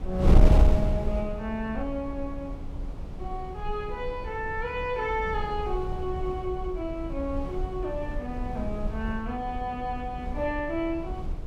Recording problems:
wind noise; below 94 Hz, SNR -1 dB

